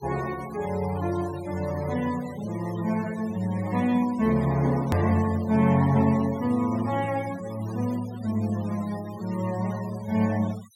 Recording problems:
denoising artefacts; signal-to-artefact ratio 19 dB
edit click; at 5 s

